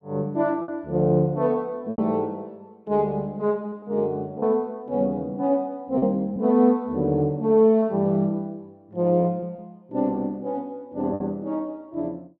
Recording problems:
lost packets; 3% of the sound replaced, filled with repeated pitch periods

